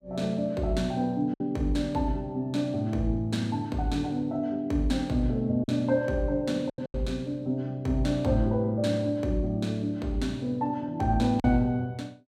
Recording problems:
packet loss; 2% of the sound replaced, filled with silence

